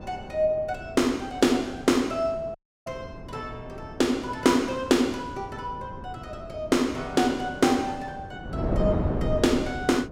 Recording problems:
wind noise; below 380 Hz, SNR 10 dB
dropout; at 2.5 s

